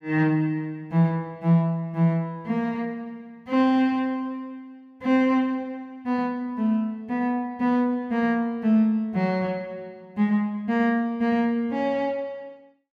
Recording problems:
none

